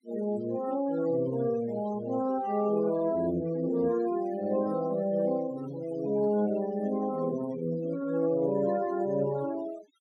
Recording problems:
denoising artefacts; signal-to-artefact ratio 17 dB

